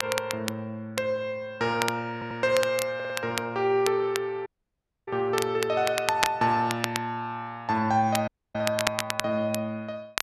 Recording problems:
crackling; vinyl, SNR 6 dB
stutter; at 2 s and at 3 s
dropout; at 4.5 s for 0.5 s and at 8.5 s

